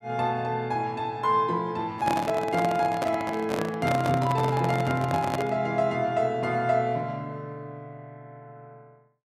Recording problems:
microphone handling noise; from 2 to 5.5 s; peak 0 dB vs average level

